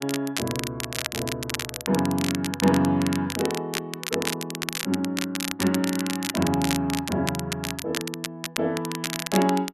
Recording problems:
crackle; vinyl, SNR 4 dB

